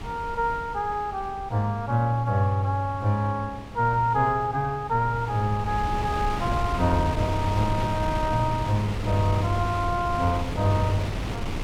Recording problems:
wind on the microphone; below 390 Hz, SNR 7 dB

